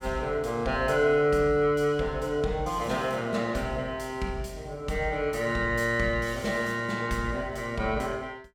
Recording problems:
none

